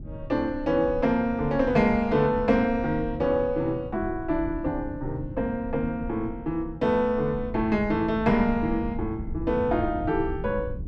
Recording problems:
rumble; below 120 Hz, SNR 12 dB

